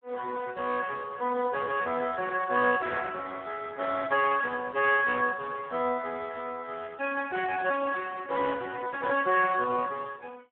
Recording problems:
telephone audio; 280 Hz to 2.2 kHz, Speex

